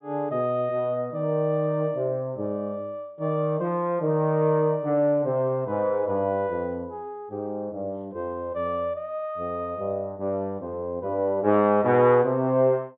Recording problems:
treble cut off; nothing above 4 kHz

